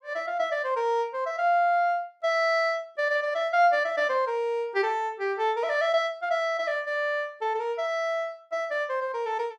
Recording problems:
none

